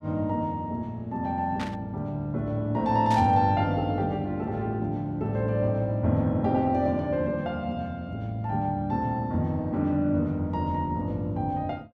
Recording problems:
static burst; at 1.5 s and at 3 s; peak -6 dB vs average level

